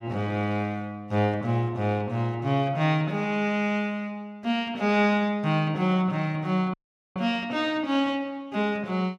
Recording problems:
dropout; at 6.5 s

